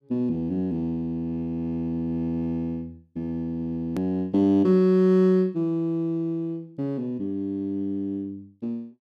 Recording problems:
hard cut with a click; at 4 s

